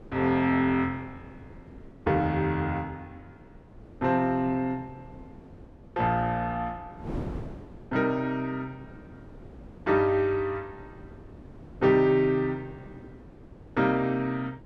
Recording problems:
wind noise; below 370 Hz, SNR 19 dB

